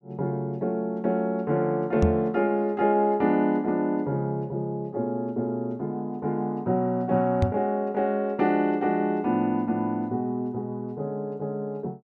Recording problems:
microphone thump; at 2 s and at 7.5 s; peak +7 dB vs average level

